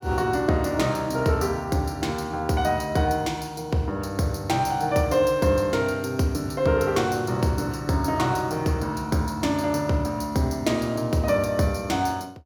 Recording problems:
none

